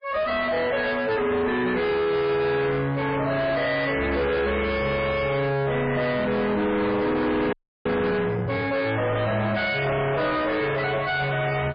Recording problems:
codec artefacts; MP3, log-spectral distance 3 dB
distortion; soft clipping, signal-to-distortion ratio 6 dB
frozen audio; at 7.5 s

